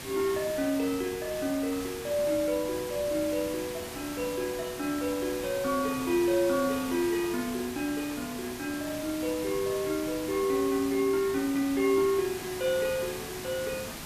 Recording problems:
background hiss; SNR 9 dB

